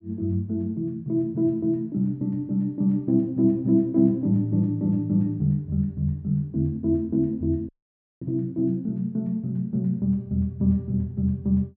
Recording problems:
dropout; at 7.5 s for 0.5 s

